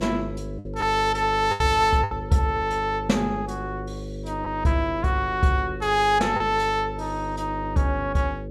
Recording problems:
hum; 50 Hz, harmonics up to 550 Hz, SNR 11 dB
packet loss; 3% of the sound replaced, filled with the last packet

